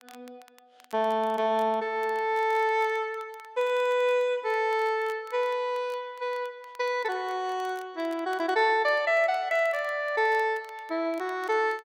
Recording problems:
crackle; vinyl, SNR 28 dB

